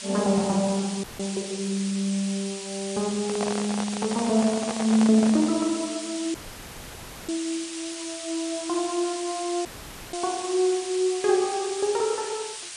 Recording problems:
codec artefacts; MP3, log-spectral distance 12 dB
background hiss; slope +3 dB per octave, SNR 9 dB
dropout; at 1 s, at 6.5 s for 1 s and at 9.5 s
handling noise; from 3 to 5.5 s; peak -1 dB vs average level

